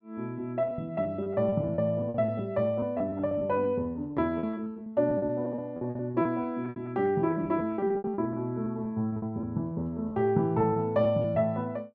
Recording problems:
lost packets; 15% of the sound replaced, filled with repeated pitch periods

